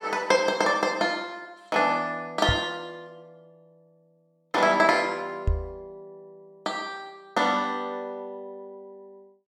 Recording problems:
microphone thump; at 2.5 s and at 5.5 s; peak +3 dB vs average level

